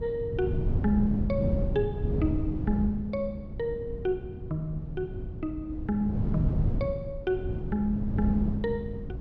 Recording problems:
wind noise; below 160 Hz, SNR 1 dB

